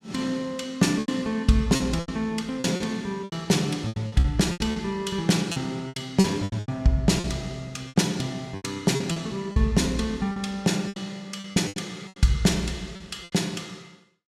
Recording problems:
packet loss; 13% of the sound replaced, filled with repeated pitch periods

